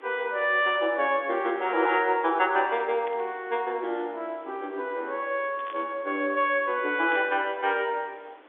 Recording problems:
telephone audio; 260 Hz to 3.6 kHz, G.711
hiss; SNR 26 dB
static burst; at 3 s, at 5.5 s and at 7 s; peak -11 dB vs average level

